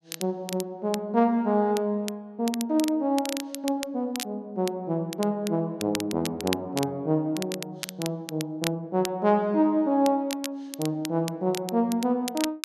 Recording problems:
crackle; vinyl, SNR 11 dB

